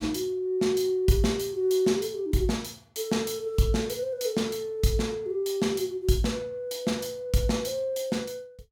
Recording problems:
none

